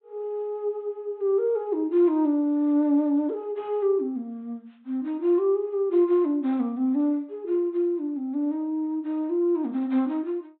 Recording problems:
treble missing; nothing above 4 kHz

